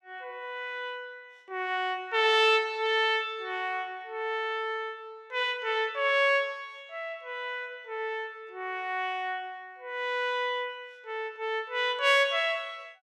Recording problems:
none

